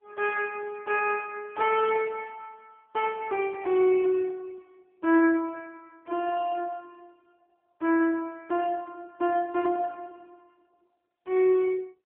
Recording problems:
telephone audio; 170 Hz to 3.3 kHz, AMR-NB

